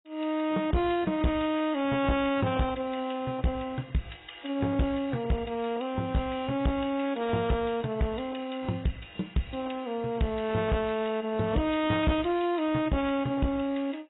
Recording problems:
codec artefacts; AAC, log-spectral distance 4 dB, nothing above 3.7 kHz
distortion; hard clipping, uneven, signal-to-distortion ratio 11 dB

